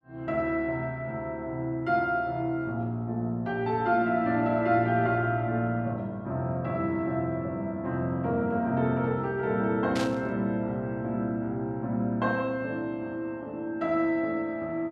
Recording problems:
static burst; at 10 s; peak -4 dB vs average level

